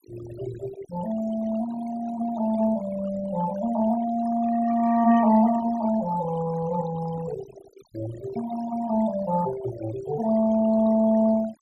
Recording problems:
noise reduction artefacts; signal-to-artefact ratio 16 dB

